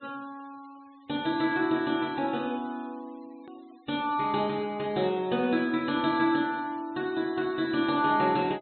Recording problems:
treble missing; nothing above 4.1 kHz
noise reduction artefacts; signal-to-artefact ratio 26 dB
hard cut with a click; at 3.5 s

